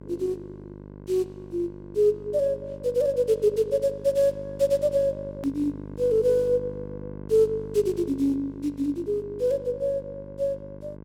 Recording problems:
hum; 50 Hz, harmonics up to 1.1 kHz, SNR 15 dB
edit click; at 5.5 s

